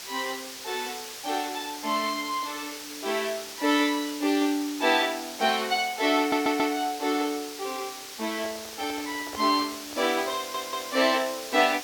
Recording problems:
hiss; slope +1 dB per octave, SNR 10 dB
audio stuttering; at 6 s and at 10 s
handling noise; from 8.5 to 11 s; peak -7 dB vs average level

